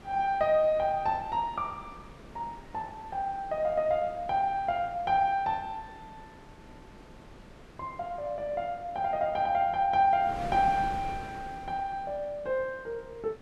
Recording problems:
wind noise; below 800 Hz, SNR 18 dB

